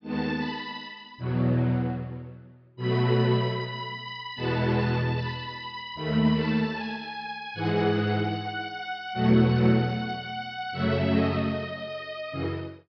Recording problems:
treble cut off; nothing above 5.5 kHz

